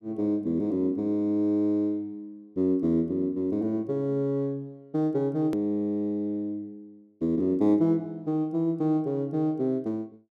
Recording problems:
click at an edit; at 5.5 s

